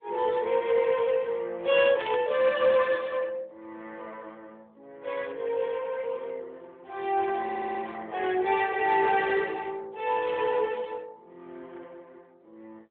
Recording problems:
telephone audio; 260 Hz to 3.4 kHz, AMR-NB
static burst; at 2 s; peak -6 dB vs average level
stutter; at 7.5 s

